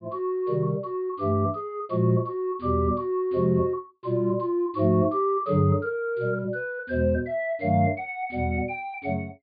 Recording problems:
low-pass filter; nothing above 4.8 kHz

